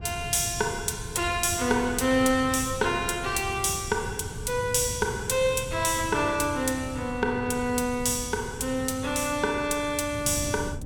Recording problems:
wind on the microphone; below 150 Hz, SNR 12 dB

